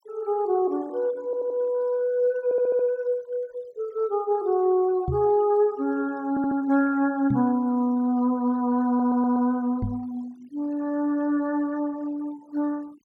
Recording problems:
noise reduction artefacts; signal-to-artefact ratio 28 dB
stutter; 4 times, first at 1.5 s
microphone bump; at 5 s, at 7.5 s and at 10 s; peak +1 dB vs average level

